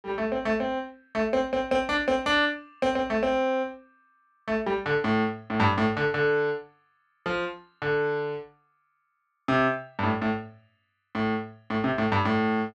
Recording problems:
none

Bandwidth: 12.5 kHz